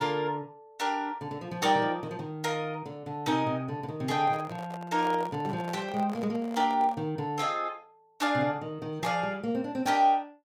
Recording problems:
microphone handling noise; from 4 to 7 s; peak -6 dB vs average level

